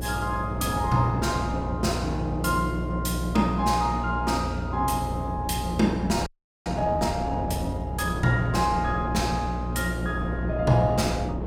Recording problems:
mains hum; 60 Hz, harmonics up to 660 Hz, SNR 6 dB
wind noise; below 490 Hz, SNR 11 dB
audio freezing; at 6.5 s

